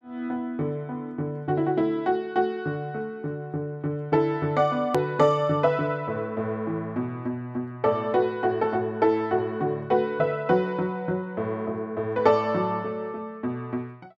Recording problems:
hard cut with a click; at 5 s

